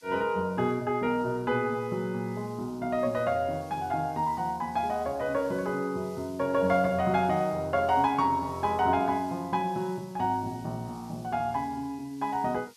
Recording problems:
hiss; slope +5 dB per octave, SNR 26 dB

